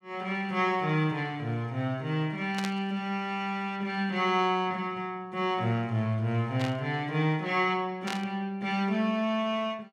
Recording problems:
burst of static; at 2.5 s, at 6.5 s and at 8 s; peak -3 dB vs average level

